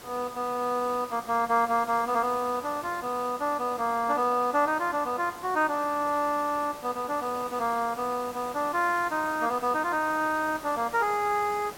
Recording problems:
background hiss; slope -4 dB per octave, SNR 16 dB

